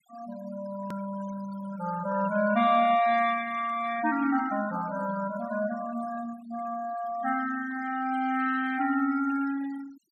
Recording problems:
denoising artefacts; signal-to-artefact ratio 17 dB
hard cut with a click; at 1 s

